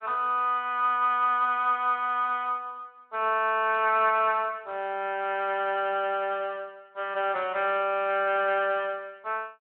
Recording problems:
phone line; 280 Hz to 3.2 kHz, Speex

